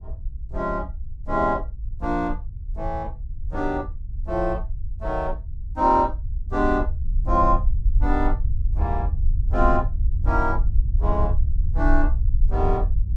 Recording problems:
rumble; below 60 Hz, strongest tone 22 Hz, SNR 2 dB

